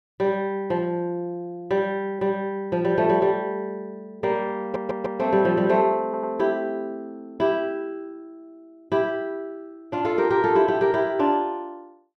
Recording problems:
audio stuttering; at 4.5 s and at 6 s

